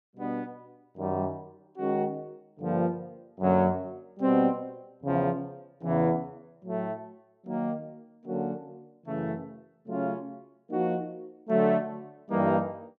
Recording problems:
none

